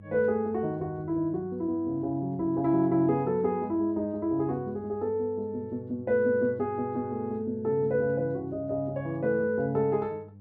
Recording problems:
electrical hum; 50 Hz, harmonics up to 500 Hz, SNR 19 dB

